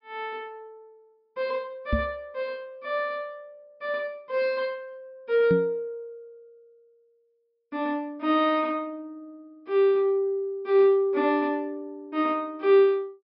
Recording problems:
low-pass filter; nothing above 5.5 kHz
knock on the microphone; at 2 s and at 5.5 s; peak +3 dB vs average level

